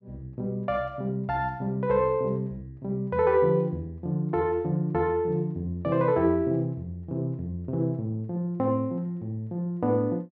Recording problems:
none

